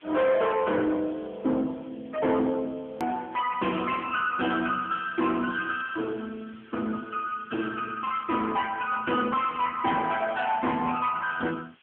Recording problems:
phone line; 190 Hz to 3.1 kHz, AMR-NB
distortion; hard clipping, signal-to-distortion ratio 11 dB
background hiss; SNR 28 dB
edit click; at 3 s

